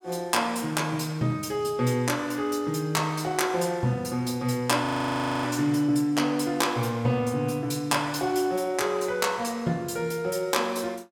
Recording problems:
audio freezing; at 5 s for 0.5 s

